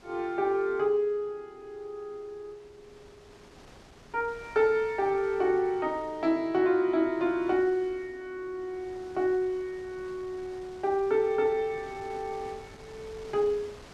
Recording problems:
wind noise; below 2 kHz, SNR 23 dB

